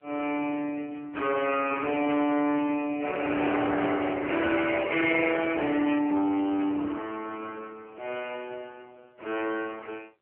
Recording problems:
phone line; 300 Hz to 2.9 kHz, AMR-NB
distorted audio; soft clipping, signal-to-distortion ratio 11 dB
static burst; at 2 s and at 6.5 s; peak -8 dB vs average level

